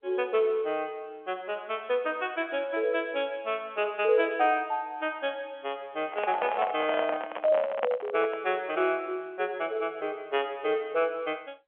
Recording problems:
phone line; 280 Hz to 3.3 kHz, G.711
handling noise; from 6 to 8.5 s; peak +4 dB vs average level

